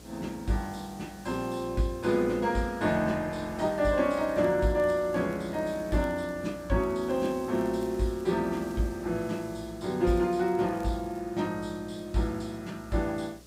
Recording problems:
electrical hum; 60 Hz, harmonics up to 720 Hz, SNR 23 dB
hiss; slope 0 dB per octave, SNR 23 dB
crackling; from 4 to 6.5 s, from 7 to 9 s and from 10 to 11 s; loose cable, SNR 29 dB

